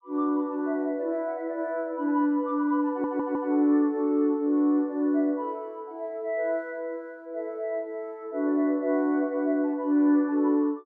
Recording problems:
stutter; at 3 s

